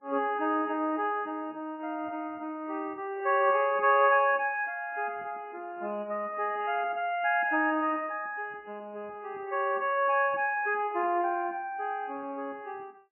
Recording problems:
lossy codec; AAC, then MP3, log-spectral distance 3 dB, nothing above 2.5 kHz

